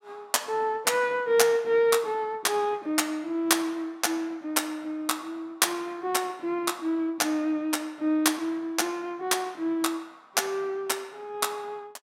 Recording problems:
none

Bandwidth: 16 kHz